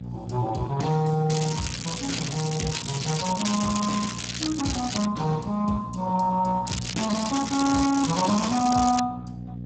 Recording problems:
lossy compression; Speex, log-spectral distance 10 dB, nothing above 7.6 kHz
hum; 60 Hz, harmonics up to 540 Hz, SNR 10 dB
crackle; from 1.5 to 5 s and from 6.5 to 9 s; loose cable, SNR 5 dB

